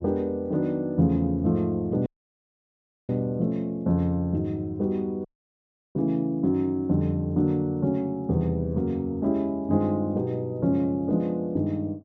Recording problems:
audio cutting out; at 2 s for 1 s and at 5.5 s for 0.5 s

